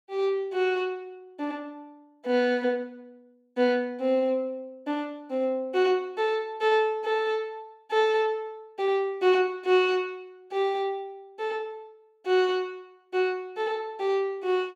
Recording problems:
none

